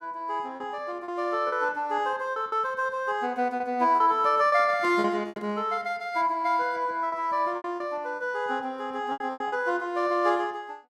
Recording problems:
packet loss; 8% of the sound replaced, filled with repeated pitch periods
microphone handling noise; from 4 to 5.5 s; peak -11 dB vs average level

